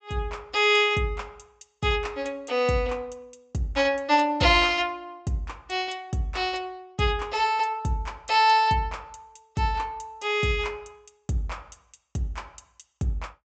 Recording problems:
low-pass filter; nothing above 8 kHz

